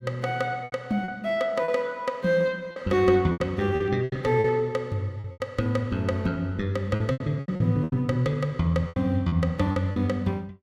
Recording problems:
packet loss; 10% of the sound replaced, filled with repeated pitch periods

